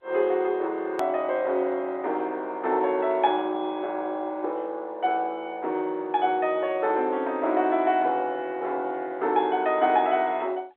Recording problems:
telephone audio; 280 Hz to 3.7 kHz, G.711
edit click; at 1 s

